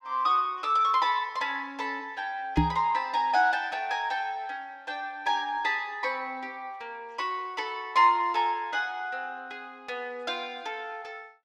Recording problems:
knock on the microphone; at 2.5 s; peak +8 dB vs average level

